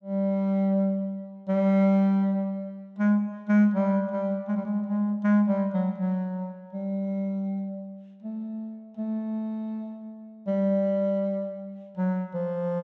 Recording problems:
none

